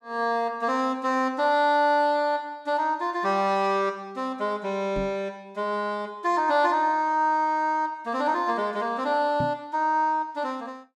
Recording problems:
microphone bump; at 5 s and at 9.5 s; peak -2 dB vs average level

